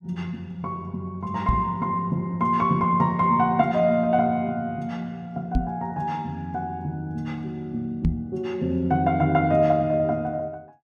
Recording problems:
microphone bump; at 1.5 s, at 5.5 s and at 8 s; peak +6 dB vs average level

